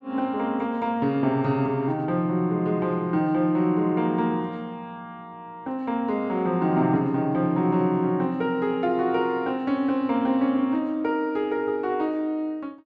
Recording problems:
none

